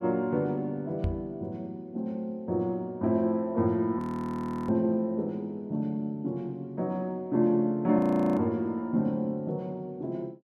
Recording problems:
microphone thump; at 1 s; peak +2 dB vs average level
audio freezing; at 4 s for 0.5 s and at 8 s

